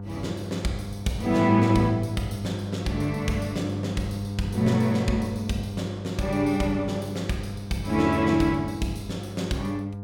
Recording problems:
hum; 50 Hz, harmonics up to 900 Hz, SNR 8 dB

